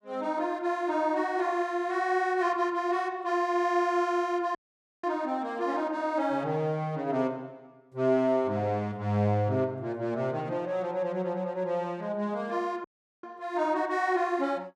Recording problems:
dropout; at 4.5 s and at 13 s

